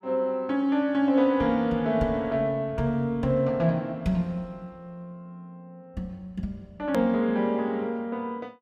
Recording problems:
edit click; at 7 s

